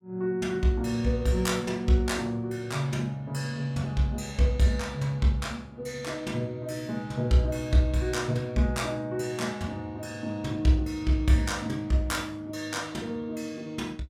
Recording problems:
none

